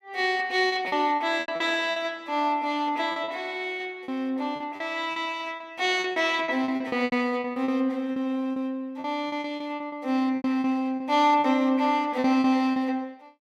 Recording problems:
lost packets; 12% of the sound replaced, filled with repeated pitch periods

